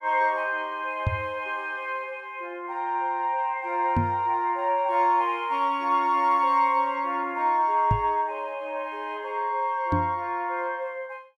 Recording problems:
microphone thump; 4 times, first at 1 s; peak +4 dB vs average level

